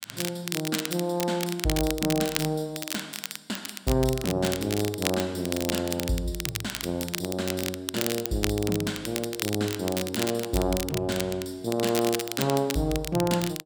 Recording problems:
crackling; vinyl, SNR 5 dB

